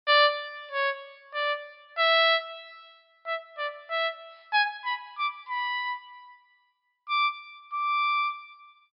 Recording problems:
low-pass filter; nothing above 5.5 kHz

